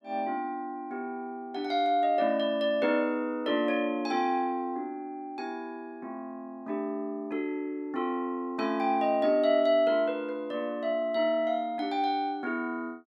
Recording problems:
none

